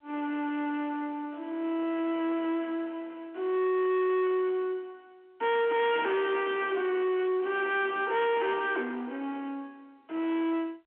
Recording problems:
phone line; 240 Hz to 3.5 kHz, G.711
distortion; soft clipping, signal-to-distortion ratio 8 dB

